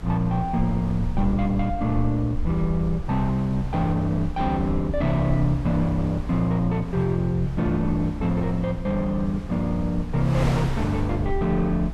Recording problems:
rumble; below 66 Hz, SNR 10 dB
wind on the microphone; below 1.2 kHz, SNR 16 dB

